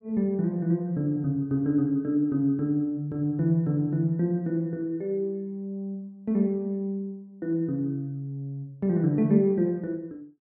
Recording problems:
none

